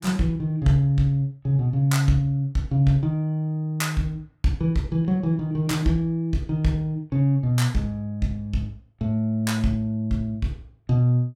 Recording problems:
none

